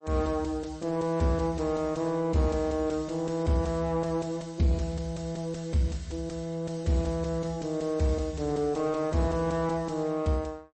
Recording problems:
codec artefacts; MP3, log-spectral distance 3 dB, nothing above 8.2 kHz
distorted audio; soft clipping, signal-to-distortion ratio 10 dB

